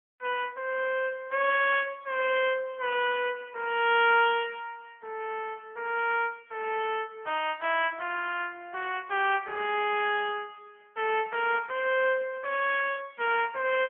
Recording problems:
telephone audio; 370 Hz to 3.3 kHz, AMR-NB

